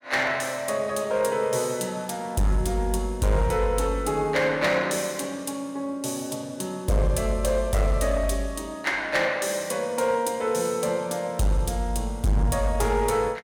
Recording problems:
distortion; hard clipping, signal-to-distortion ratio 10 dB

